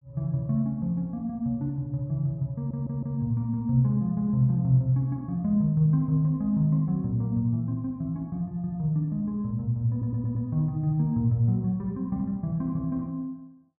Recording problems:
audio stuttering; at 2.5 s and at 10 s

